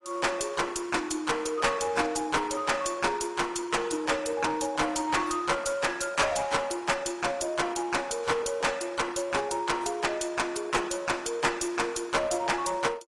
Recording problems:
codec artefacts; AAC, log-spectral distance 5 dB, nothing above 10.7 kHz
distortion; hard clipping, uneven, signal-to-distortion ratio 6 dB

